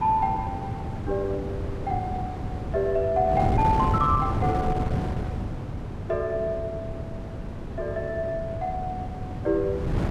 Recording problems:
wind on the microphone; below 300 Hz, SNR 3 dB

